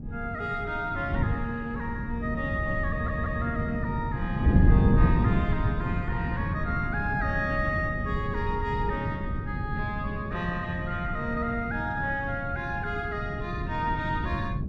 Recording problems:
wind on the microphone; below 180 Hz, SNR -1 dB
stutter; at 3 s

